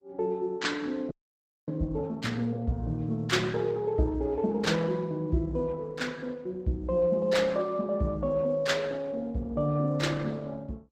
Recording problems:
lossy compression; Opus, log-spectral distance 2 dB, nothing above 16.6 kHz
audio freezing; at 1 s for 0.5 s

